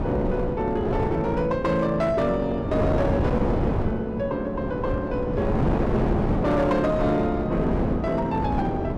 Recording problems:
distorted audio; hard clipping, signal-to-distortion ratio 12 dB
wind noise; below 480 Hz, SNR 2 dB

